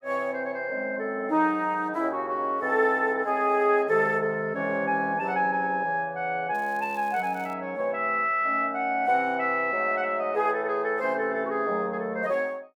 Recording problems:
crackling; at 6.5 s; loose cable, SNR 28 dB

